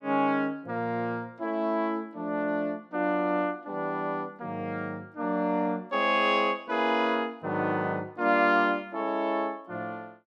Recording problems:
none

